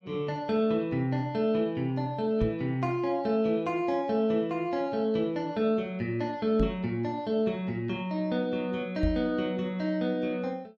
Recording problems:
microphone bump; at 2.5 s, at 6.5 s and at 9 s; peak +3 dB vs average level

